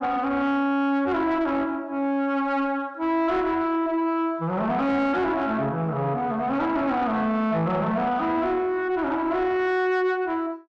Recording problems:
distorted audio; soft clipping, signal-to-distortion ratio 11 dB

